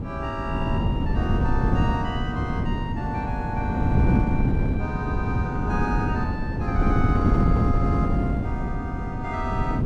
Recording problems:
wind on the microphone; below 230 Hz, SNR -7 dB

